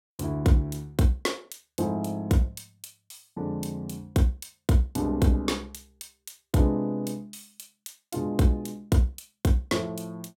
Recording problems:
none

